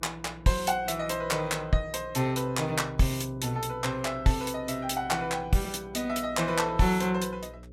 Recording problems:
electrical hum; 60 Hz, harmonics up to 540 Hz, SNR 21 dB

